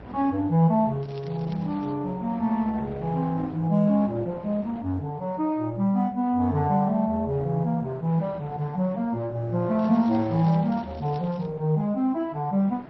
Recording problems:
lossy compression; MP3, then Opus, log-spectral distance 2 dB
wind on the microphone; below 750 Hz, SNR 21 dB
crackle; at 1 s and from 10 to 11 s; loose cable, SNR 29 dB

